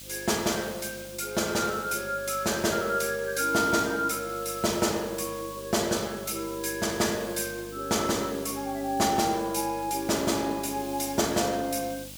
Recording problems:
electrical hum; 50 Hz, harmonics up to 1.5 kHz, SNR 20 dB
hiss; slope +4 dB per octave, SNR 15 dB

